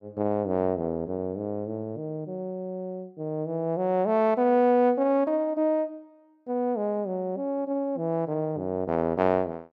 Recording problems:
none

